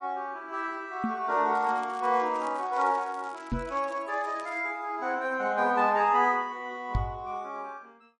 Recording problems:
lossy codec; MP3, log-spectral distance 2 dB
knock on the microphone; at 1 s, at 3.5 s and at 7 s; peak +3 dB vs average level
crackle; from 1.5 to 4 s and at 4 s; loose cable, SNR 25 dB

